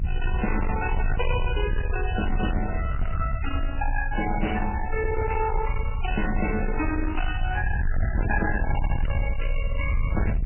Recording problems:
codec artefacts; MP3, log-spectral distance 4 dB, nothing above 2.7 kHz
distortion; soft clipping, signal-to-distortion ratio 7 dB
low-frequency rumble; below 84 Hz, strongest tone 26 Hz, SNR 0 dB

